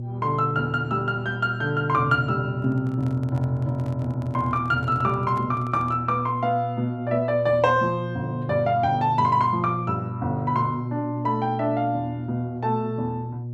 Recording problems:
hum; 60 Hz, harmonics up to 600 Hz, SNR 8 dB
handling noise; from 2.5 to 6 s; peak -12 dB vs average level

